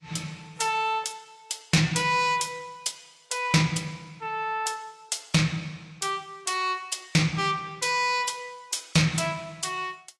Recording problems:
lossy codec; AAC, log-spectral distance 3 dB, nothing above 11 kHz
distorted audio; soft clipping, signal-to-distortion ratio 11 dB

